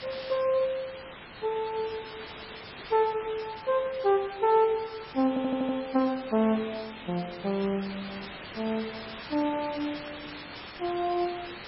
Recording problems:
codec artefacts; MP3, log-spectral distance 16 dB
hiss; SNR 12 dB
audio stuttering; at 5.5 s

